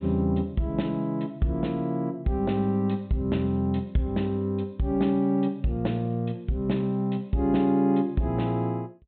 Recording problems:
low-pass filter; nothing above 4 kHz

